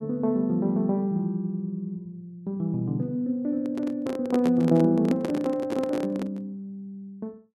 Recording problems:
handling noise; from 3.5 to 6.5 s; peak 0 dB vs average level

